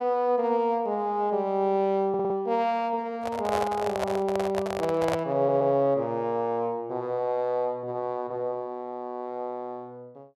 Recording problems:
stutter; at 2 s and at 5.5 s
handling noise; from 3 to 5 s; peak +3 dB vs average level

